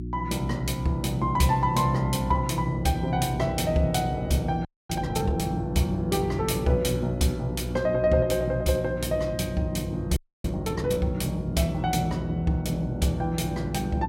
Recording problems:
electrical hum; 60 Hz, harmonics up to 360 Hz, SNR 8 dB
frozen audio; at 4.5 s and at 10 s

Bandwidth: 16 kHz